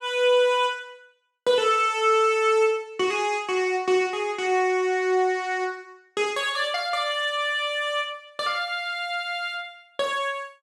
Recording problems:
none

